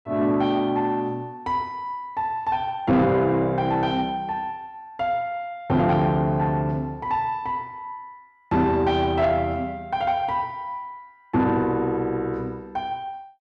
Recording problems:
distorted audio; soft clipping, signal-to-distortion ratio 11 dB

